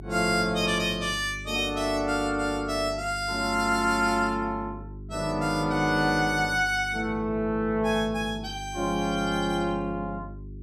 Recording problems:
hum; 50 Hz, harmonics up to 400 Hz, SNR 15 dB

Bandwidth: 15 kHz